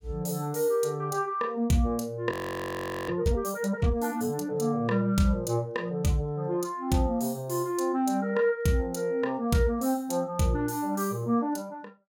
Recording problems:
audio freezing; at 2.5 s for 1 s

